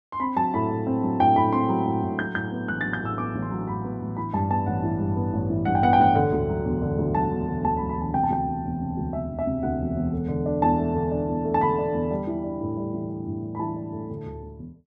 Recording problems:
none

